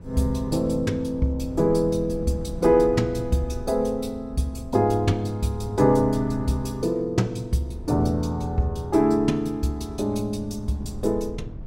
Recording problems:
wind noise; below 140 Hz, SNR 15 dB

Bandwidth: 16.5 kHz